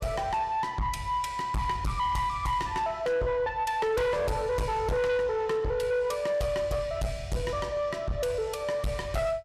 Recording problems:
distortion; soft clipping, signal-to-distortion ratio 7 dB

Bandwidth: 14.5 kHz